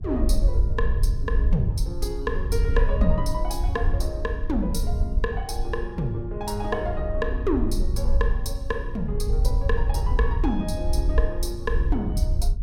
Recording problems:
wind noise; below 62 Hz, SNR -2 dB

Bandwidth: 16.5 kHz